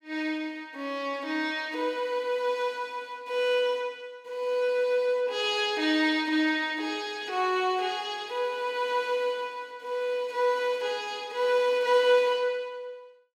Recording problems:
none

